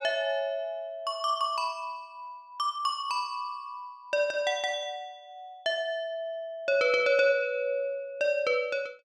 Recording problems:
none

